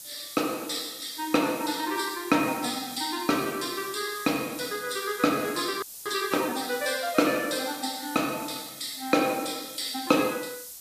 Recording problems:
lossy codec; AAC, log-spectral distance 4 dB, nothing above 14.7 kHz
background hiss; SNR 12 dB
audio freezing; at 6 s

